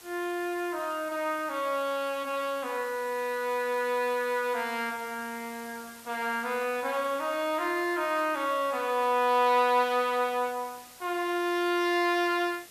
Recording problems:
background hiss; slope 0 dB per octave, SNR 19 dB

